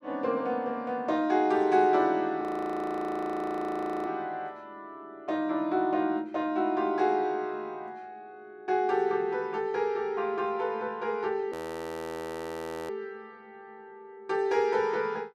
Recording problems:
audio freezing; at 2.5 s for 1.5 s and at 12 s for 1.5 s

